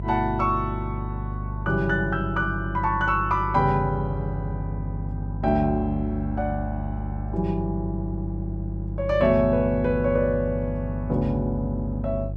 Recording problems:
hum; 50 Hz, harmonics up to 500 Hz, SNR 6 dB

